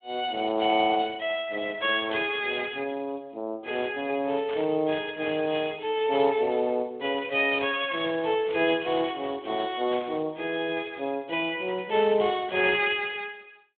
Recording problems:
phone line; 220 Hz to 3.6 kHz, Speex
static burst; 4 times, first at 4.5 s; peak -9 dB vs average level

